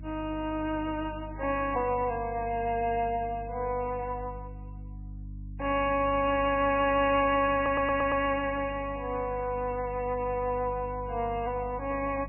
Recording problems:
lossy codec; MP3, log-spectral distance 3 dB, nothing above 2.5 kHz
hum; 50 Hz, harmonics up to 300 Hz, SNR 14 dB
audio stuttering; at 7.5 s

